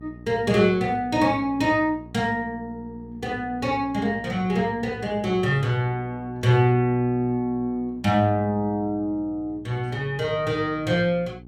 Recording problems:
hum; 60 Hz, harmonics up to 780 Hz, SNR 20 dB

